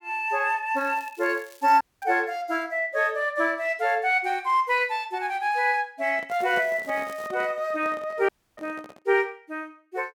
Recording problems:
crackling; from 1 to 2 s and at 6.5 s; loose cable, SNR 26 dB
audio cutting out; at 2 s and at 8.5 s
handling noise; from 6 to 9 s; peak -9 dB vs average level

